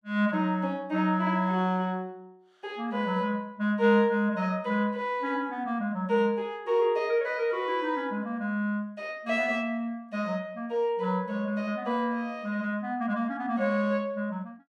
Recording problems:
none

